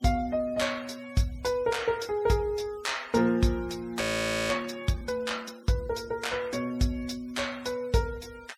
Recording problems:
denoising artefacts; signal-to-artefact ratio 22 dB
frozen audio; at 4 s

